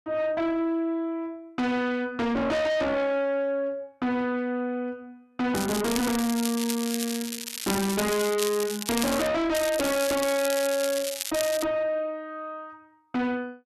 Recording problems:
distorted audio; soft clipping, signal-to-distortion ratio 6 dB
crackling; from 5.5 to 9.5 s and from 9.5 to 12 s; loose cable, SNR 6 dB

